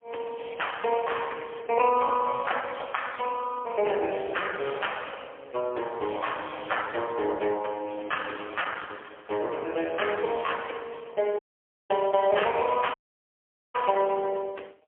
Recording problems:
phone line; 320 Hz to 3.3 kHz, AMR-NB, then MP3
audio cutting out; at 11 s for 0.5 s and at 13 s for 1 s

